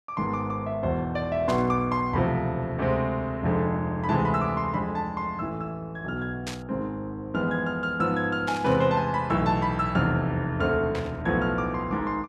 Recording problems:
burst of static; 4 times, first at 1.5 s; peak -4 dB vs average level

